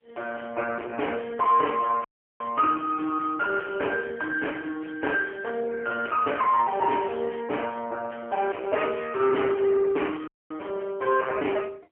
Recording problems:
phone line; 280 Hz to 3.1 kHz, AMR-NB, then MP3
distorted audio; soft clipping, signal-to-distortion ratio 9 dB
audio cutting out; at 2 s and at 10 s

